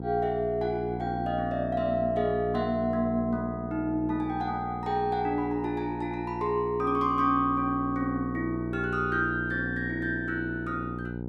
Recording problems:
electrical hum; 60 Hz, harmonics up to 900 Hz, SNR 7 dB

